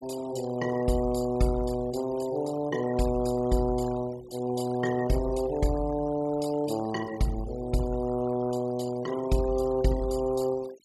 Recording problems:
noise reduction artefacts; signal-to-artefact ratio 17 dB

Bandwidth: 13.5 kHz